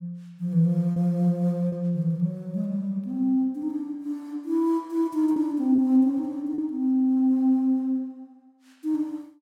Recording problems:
lost packets; 2% of the sound replaced, filled with repeated pitch periods

